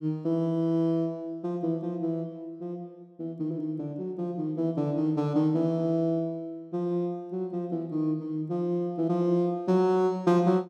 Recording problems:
none

